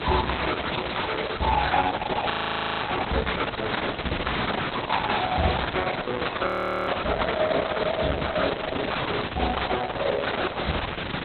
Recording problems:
lossy codec; Opus, log-spectral distance 16 dB, nothing above 4 kHz
hum; 60 Hz, harmonics up to 540 Hz, SNR 18 dB
background hiss; SNR 3 dB
frozen audio; at 2.5 s for 0.5 s and at 6.5 s

